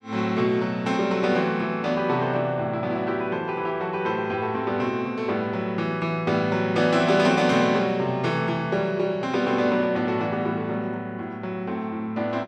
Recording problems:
none

